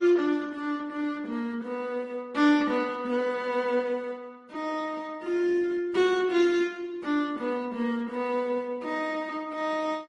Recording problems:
codec artefacts; Opus, then MP3, log-spectral distance 2 dB

